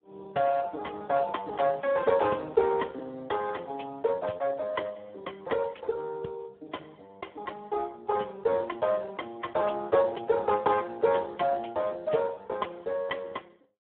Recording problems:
telephone audio; 280 Hz to 2 kHz, Speex

